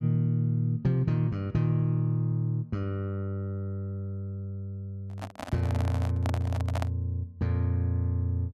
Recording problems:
handling noise; from 5 to 7 s; peak -1 dB vs average level

